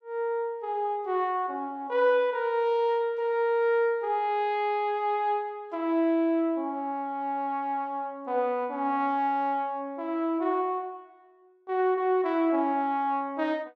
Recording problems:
none

